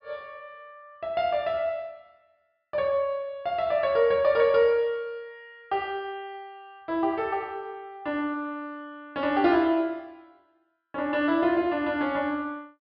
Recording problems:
treble cut off; nothing above 5.4 kHz

